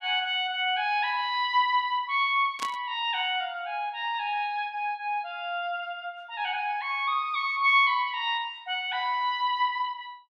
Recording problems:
static burst; at 2.5 s; peak -4 dB vs average level

